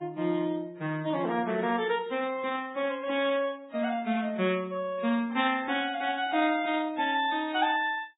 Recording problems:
lossy codec; AAC, then Vorbis, log-spectral distance 3 dB, nothing above 3.8 kHz

